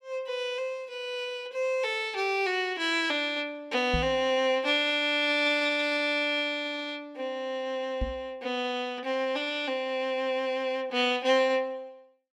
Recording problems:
microphone bump; at 4 s and at 8 s; peak 0 dB vs average level

